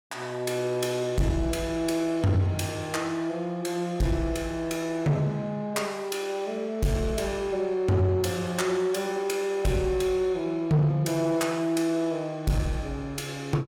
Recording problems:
distortion; soft clipping, signal-to-distortion ratio 11 dB

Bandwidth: 18 kHz